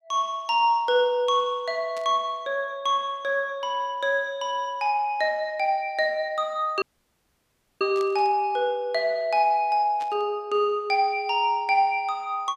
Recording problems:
burst of static; at 2 s, at 8 s and at 10 s; peak -14 dB vs average level
dropout; at 7 s for 1 s

